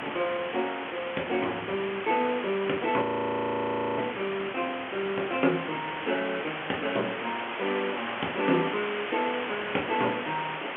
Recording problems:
phone line; 240 Hz to 3.3 kHz, G.711
background hiss; SNR 5 dB
wind noise; below 630 Hz, SNR 20 dB
audio freezing; at 3 s for 1 s

